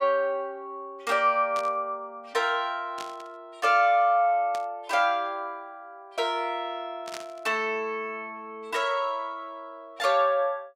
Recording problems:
static burst; 4 times, first at 1.5 s; peak -8 dB vs average level

